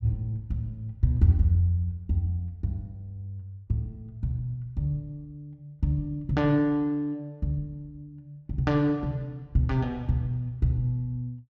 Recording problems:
none

